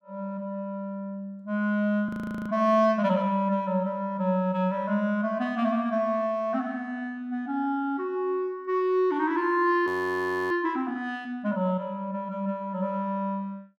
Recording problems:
audio freezing; at 2 s and at 10 s for 0.5 s

